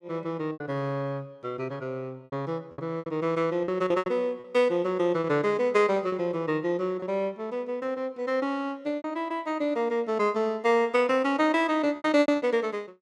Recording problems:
packet loss; 7% of the sound replaced, filled with repeated pitch periods

